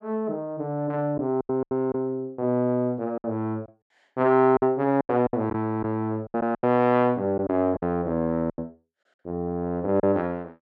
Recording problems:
lost packets; 9% of the sound replaced, filled with silence

